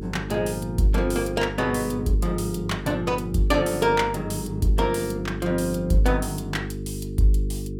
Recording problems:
electrical hum; 50 Hz, harmonics up to 450 Hz, SNR 9 dB

